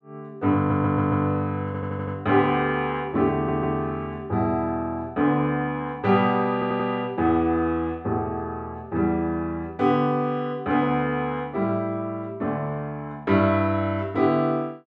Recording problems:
stutter; 4 times, first at 0.5 s

